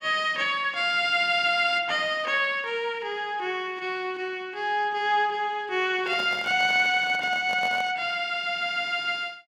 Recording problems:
handling noise; from 6 to 8 s; peak -9 dB vs average level

